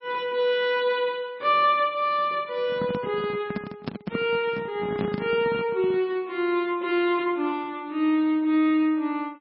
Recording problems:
codec artefacts; MP3, log-spectral distance 2 dB, nothing above 5.5 kHz
handling noise; from 2.5 to 6 s; peak -1 dB vs average level

